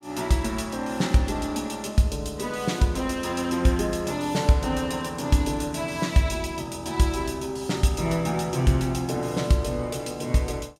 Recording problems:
none

